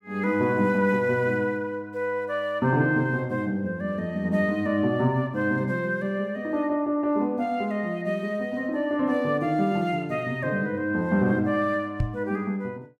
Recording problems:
knock on the microphone; at 12 s; peak +3 dB vs average level

